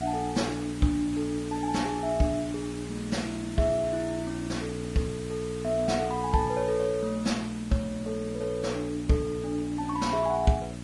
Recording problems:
codec artefacts; Vorbis, log-spectral distance 5 dB, nothing above 10.4 kHz
hum; 60 Hz, harmonics up to 660 Hz, SNR 9 dB
hiss; slope -1 dB per octave, SNR 16 dB

